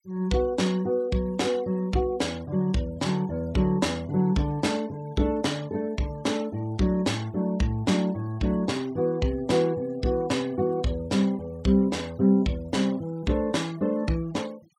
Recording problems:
noise reduction artefacts; signal-to-artefact ratio 25 dB

